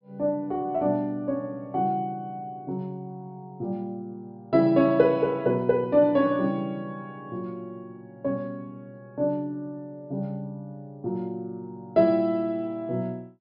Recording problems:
low-pass filter; nothing above 5.5 kHz

